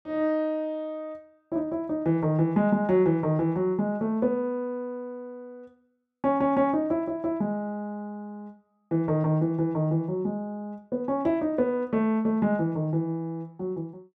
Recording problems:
none

